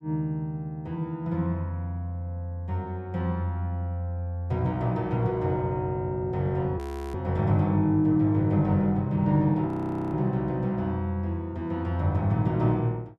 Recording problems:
frozen audio; at 7 s and at 9.5 s

